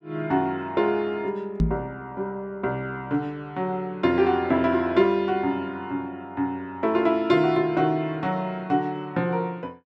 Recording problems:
microphone thump; at 1.5 s; peak +6 dB vs average level

